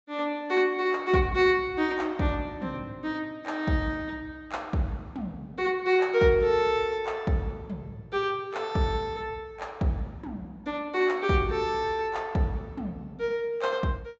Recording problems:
treble missing; nothing above 8 kHz

